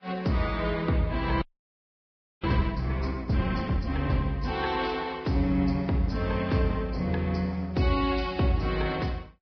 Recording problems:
lossy codec; Vorbis, log-spectral distance 3 dB, nothing above 5.3 kHz
frozen audio; at 1.5 s for 1 s

